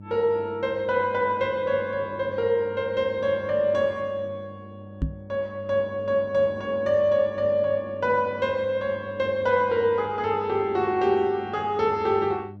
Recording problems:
hum; 50 Hz, harmonics up to 600 Hz, SNR 18 dB
knock on the microphone; at 5 s; peak +2 dB vs average level

